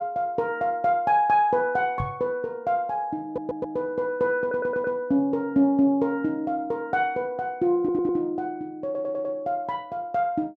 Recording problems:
microphone thump; at 2 s; peak -2 dB vs average level
stutter; 4 times, first at 3.5 s

